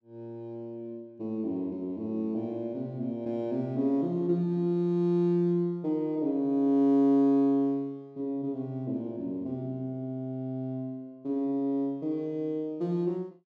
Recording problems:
none

